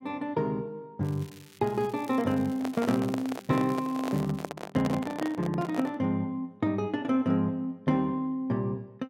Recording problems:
crackle; from 1 to 4.5 s; loose cable, SNR 23 dB
handling noise; from 2.5 to 6 s; peak -1 dB vs average level

